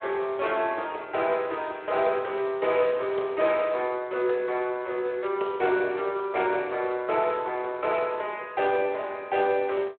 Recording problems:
telephone audio; 300 Hz to 4 kHz, Speex

